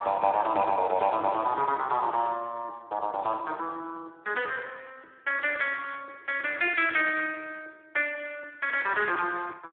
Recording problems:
telephone audio; 300 Hz to 3.4 kHz, Speex

